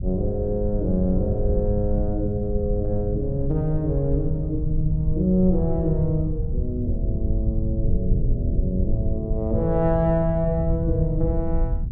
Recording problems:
rumble; below 96 Hz, SNR 2 dB

